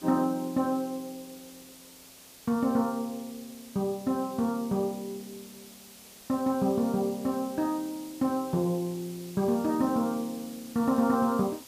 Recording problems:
background hiss; SNR 19 dB

